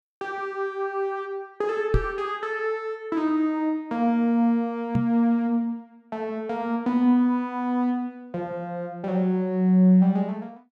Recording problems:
microphone thump; at 2 s and at 5 s; peak +5 dB vs average level

